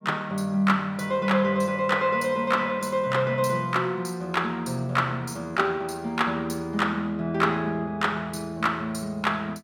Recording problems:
none

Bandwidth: 16.5 kHz